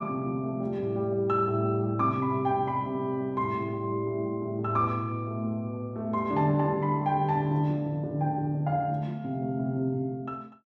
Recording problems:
none

